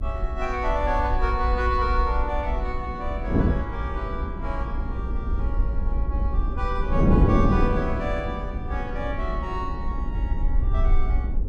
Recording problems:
rumble; below 56 Hz, SNR 0 dB
wind noise; below 270 Hz, SNR -1 dB

